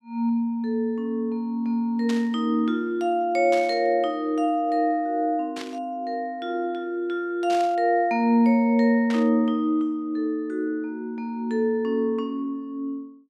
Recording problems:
static burst; 5 times, first at 2 s; peak -7 dB vs average level

